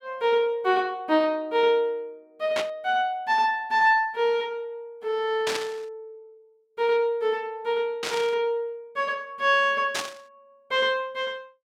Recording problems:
burst of static; 4 times, first at 2.5 s; peak 0 dB vs average level

